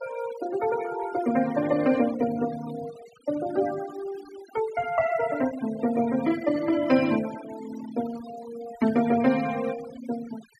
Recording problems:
denoising artefacts; signal-to-artefact ratio 17 dB

